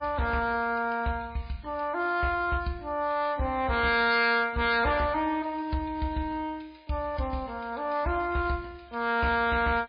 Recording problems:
lossy codec; MP3, log-spectral distance 3 dB, nothing above 4.2 kHz
distortion; hard clipping, signal-to-distortion ratio 10 dB

